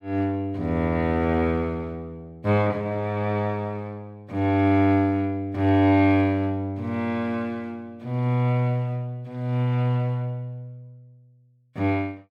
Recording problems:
none

